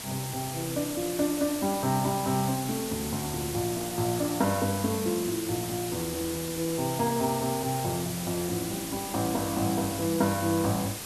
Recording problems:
hiss; slope -1 dB per octave, SNR 6 dB

